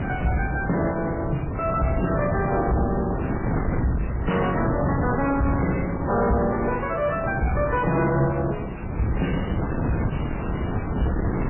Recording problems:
lossy compression; MP3, then AAC, log-spectral distance 7 dB, nothing above 2.7 kHz
distorted audio; soft clipping, signal-to-distortion ratio 6 dB
wind on the microphone; below 410 Hz, SNR 3 dB

